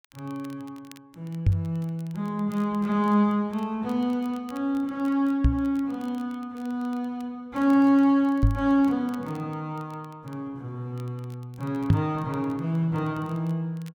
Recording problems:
crackling; vinyl, SNR 30 dB
knock on the microphone; 4 times, first at 1.5 s; peak +10 dB vs average level

